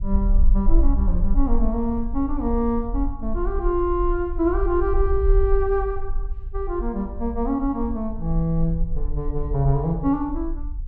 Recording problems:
low-frequency rumble; below 48 Hz, SNR 3 dB

